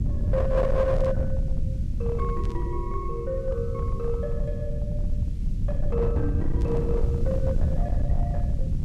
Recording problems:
distortion; hard clipping, signal-to-distortion ratio 12 dB
hiss; SNR 28 dB
low-frequency rumble; below 110 Hz, SNR -2 dB
burst of static; at 1 s, at 2.5 s and at 6.5 s; peak -15 dB vs average level

